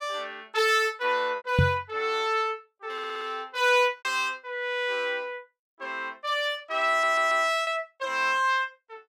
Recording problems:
lost packets; 2% of the sound replaced, filled with repeated pitch periods
microphone thump; at 1.5 s; peak +7 dB vs average level
stutter; at 3 s and at 7 s

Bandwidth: 17 kHz